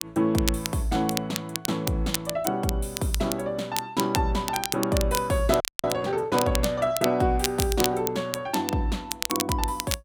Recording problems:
crackle; vinyl, SNR 6 dB
audio freezing; at 5.5 s

